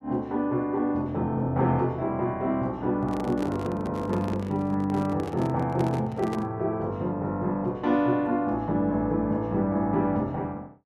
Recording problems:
microphone handling noise; from 3 to 6.5 s; peak -2 dB vs average level

